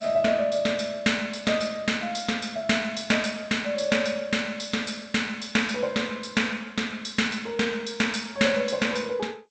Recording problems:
lossy compression; G.722, then G.722, log-spectral distance 5 dB, nothing above 8.2 kHz

